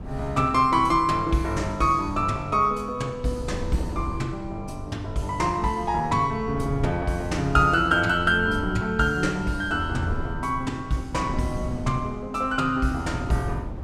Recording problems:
wind noise; below 190 Hz, SNR 12 dB

